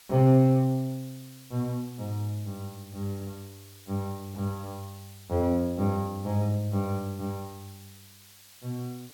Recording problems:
hiss; slope +2 dB per octave, SNR 22 dB

